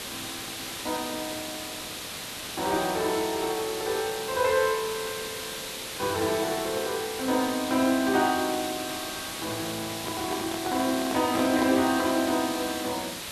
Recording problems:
hiss; slope -1 dB per octave, SNR 6 dB
handling noise; from 10 to 12 s; peak 0 dB vs average level

